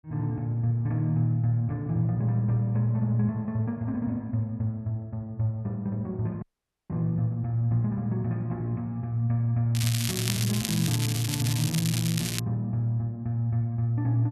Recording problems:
audio cutting out; at 6.5 s
crackling; from 9.5 to 12 s; loose cable, SNR 4 dB

